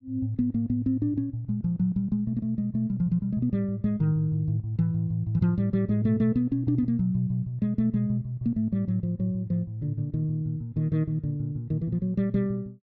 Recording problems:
none

